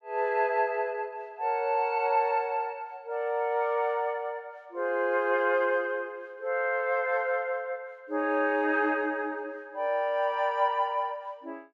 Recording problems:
none

